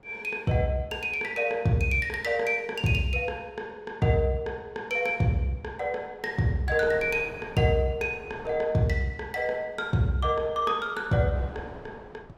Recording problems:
wind on the microphone; below 770 Hz, SNR 23 dB

